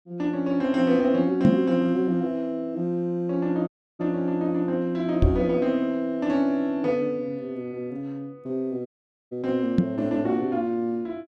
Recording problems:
microphone thump; at 1.5 s, at 5 s and at 10 s; peak +9 dB vs average level
dropout; at 3.5 s and at 9 s

